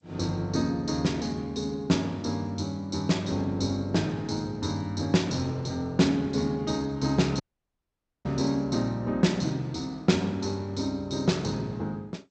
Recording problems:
lossy codec; G.722, log-spectral distance 3 dB
audio cutting out; at 7.5 s for 1 s

